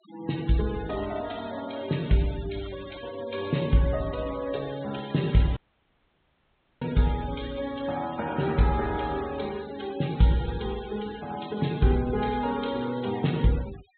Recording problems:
treble missing; nothing above 4 kHz
noise reduction artefacts; signal-to-artefact ratio 17 dB
audio cutting out; at 5.5 s for 1 s

